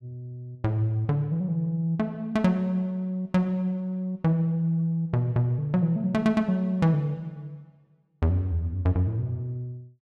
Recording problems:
none

